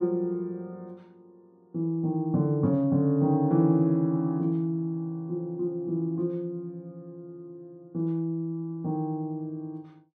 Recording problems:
none

